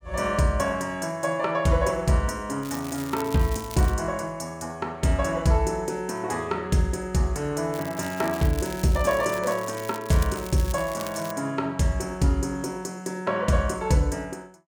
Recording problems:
crackling; from 2.5 to 4 s and from 7.5 to 11 s; loose cable, SNR 15 dB

